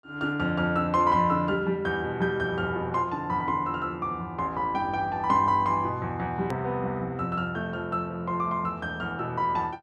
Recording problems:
click at an edit; at 6.5 s

